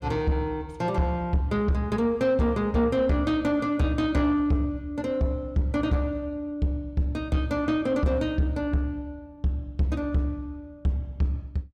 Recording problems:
distorted audio; soft clipping, signal-to-distortion ratio 12 dB

